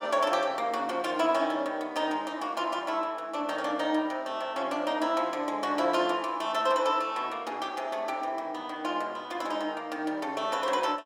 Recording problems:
none

